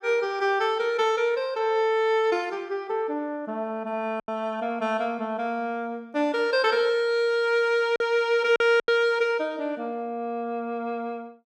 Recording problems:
lost packets; 2% of the sound replaced, filled with silence

